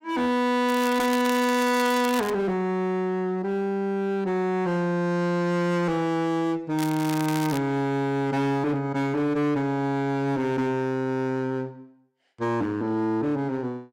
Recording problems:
distortion; hard clipping, signal-to-distortion ratio 6 dB
crackle; from 0.5 to 2.5 s and at 7 s; loose cable, SNR 12 dB

